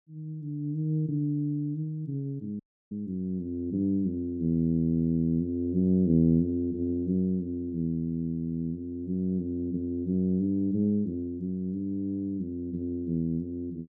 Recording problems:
dropout; at 2.5 s

